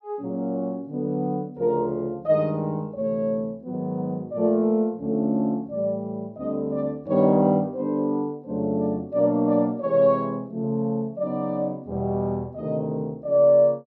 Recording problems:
none

